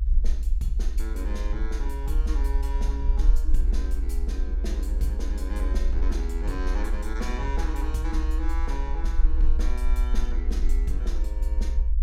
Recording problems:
rumble; below 58 Hz, SNR -9 dB

